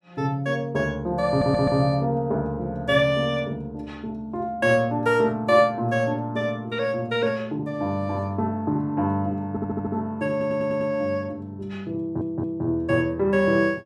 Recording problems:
audio stuttering; 4 times, first at 1.5 s

